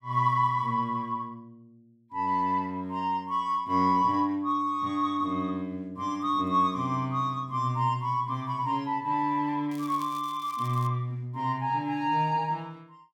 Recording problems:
crackle; from 9.5 to 11 s; loose cable, SNR 22 dB

